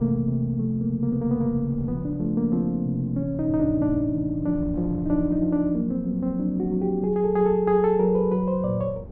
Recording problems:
wind on the microphone; below 180 Hz, SNR 17 dB

